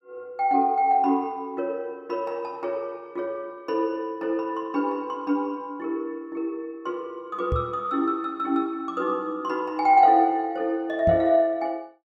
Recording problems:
knock on the microphone; at 7.5 s and at 11 s; peak +1 dB vs average level

